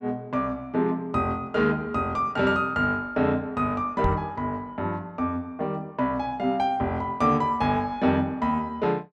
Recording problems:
knock on the microphone; at 4 s; peak +2 dB vs average level

